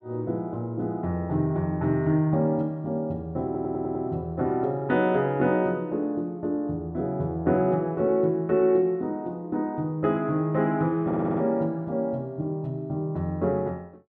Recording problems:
audio stuttering; at 3.5 s and at 11 s

